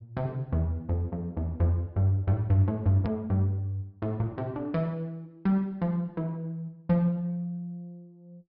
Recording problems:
low-pass filter; nothing above 5.3 kHz
hard cut with a click; at 3 s

